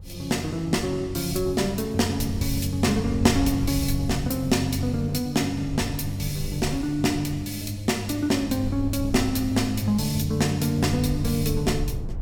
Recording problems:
wind on the microphone; below 100 Hz, SNR 11 dB

